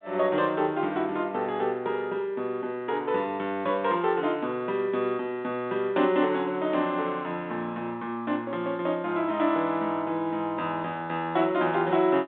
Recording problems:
telephone audio; 190 Hz to 3.8 kHz, G.726

